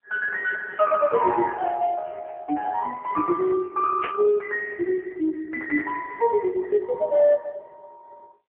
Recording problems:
phone line; 260 Hz to 2.5 kHz, AMR-NB
burst of static; at 4 s; peak -3 dB vs average level

